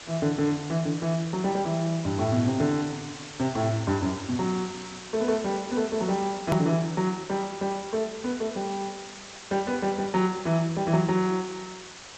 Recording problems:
codec artefacts; G.722, log-spectral distance 15 dB, nothing above 13.1 kHz
hiss; slope -1 dB per octave, SNR 14 dB
click at an edit; at 6.5 s

